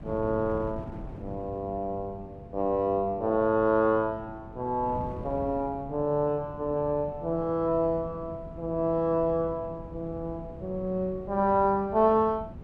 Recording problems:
wind noise; below 250 Hz, SNR 15 dB

